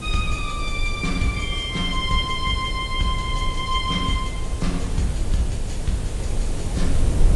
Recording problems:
codec artefacts; AAC, log-spectral distance 4 dB, nothing above 10.7 kHz
background hiss; SNR 11 dB
rumble; below 64 Hz, SNR 4 dB

